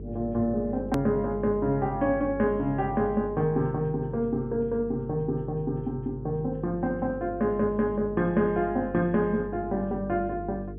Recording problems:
treble cut off; nothing above 3.4 kHz
hum; 50 Hz, harmonics up to 450 Hz, SNR 13 dB
edit click; at 1 s

